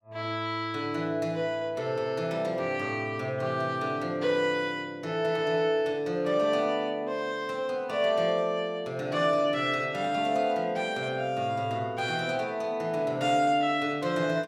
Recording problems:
none

